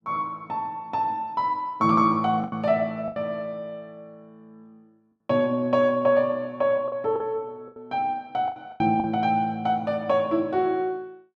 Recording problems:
lost packets; 5% of the sound replaced, filled with the last packet

